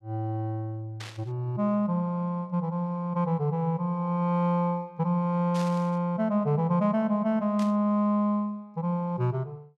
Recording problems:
static burst; at 1 s, at 5.5 s and at 7.5 s; peak -10 dB vs average level

